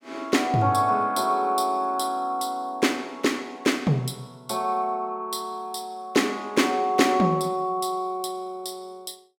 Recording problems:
none

